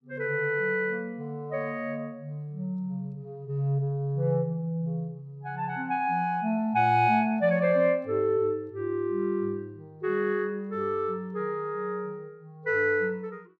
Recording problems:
none

